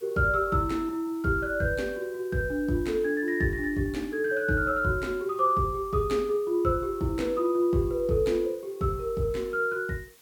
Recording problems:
background hiss; slope 0 dB per octave, SNR 27 dB

